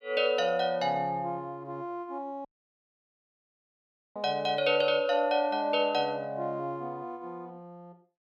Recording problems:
audio cutting out; at 2.5 s for 1.5 s

